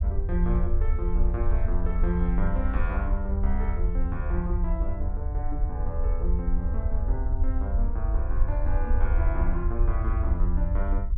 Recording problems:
rumble; below 64 Hz, SNR -6 dB

